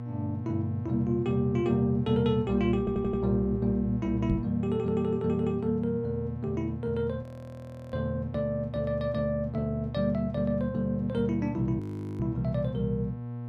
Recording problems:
mains hum; 60 Hz, harmonics up to 1.1 kHz, SNR 9 dB
audio stuttering; at 3 s
microphone bump; at 4.5 s; peak +3 dB vs average level
audio freezing; at 7 s for 0.5 s and at 12 s

